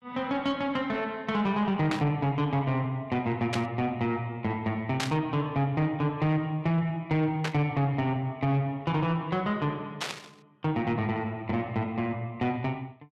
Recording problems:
distorted audio; soft clipping, signal-to-distortion ratio 11 dB
static burst; 5 times, first at 2 s; peak +1 dB vs average level

